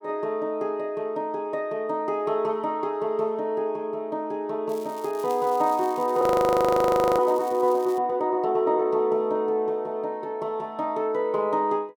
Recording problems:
crackling; from 4.5 to 8 s; loose cable, SNR 23 dB
audio freezing; at 6 s for 1 s

